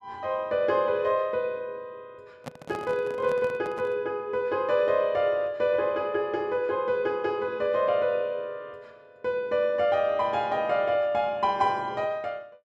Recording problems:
handling noise; from 2.5 to 4 s; peak -7 dB vs average level

